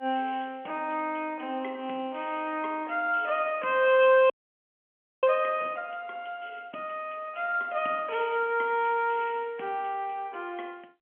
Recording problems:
telephone audio; 220 Hz to 3.3 kHz, G.711
frozen audio; at 4.5 s for 1 s

